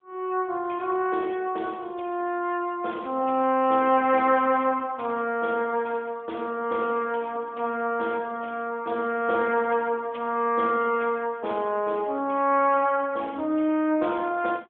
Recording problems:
phone line; 240 Hz to 2 kHz, AMR-NB

